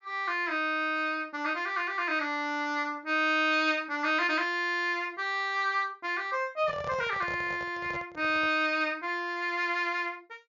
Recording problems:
low-pass filter; nothing above 7 kHz
handling noise; from 6.5 to 8.5 s; peak -8 dB vs average level

